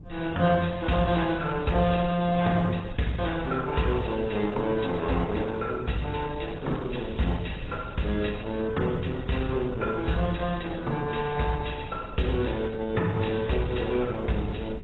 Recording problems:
lossy codec; AAC, then Opus, log-spectral distance 6 dB, nothing above 3.9 kHz
wind noise; below 180 Hz, SNR 14 dB
crackle; from 1 to 2.5 s and from 6.5 to 8 s; loose cable, SNR 26 dB

